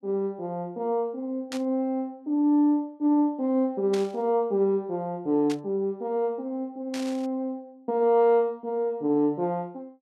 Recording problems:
burst of static; 4 times, first at 1.5 s; peak -6 dB vs average level

